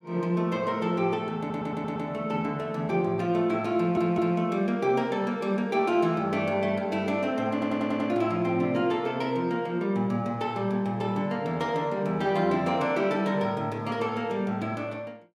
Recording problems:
stutter; at 1.5 s, at 4 s and at 7.5 s

